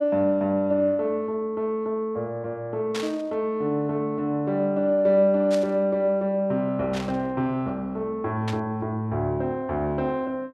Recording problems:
burst of static; 4 times, first at 3 s; peak -4 dB vs average level

